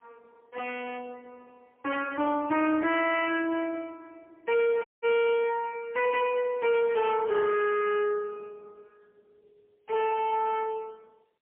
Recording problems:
phone line; 260 Hz to 3.1 kHz, AMR-NB, then MP3
distortion; soft clipping, signal-to-distortion ratio 6 dB
dropout; at 5 s

